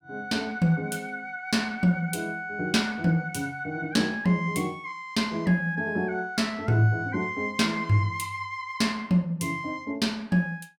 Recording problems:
none

